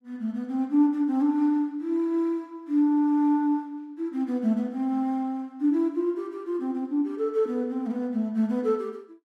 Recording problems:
none

